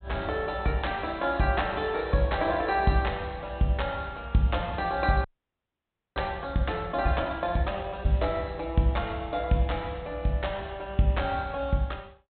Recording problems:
treble cut off; nothing above 4 kHz
audio freezing; at 5.5 s for 1 s

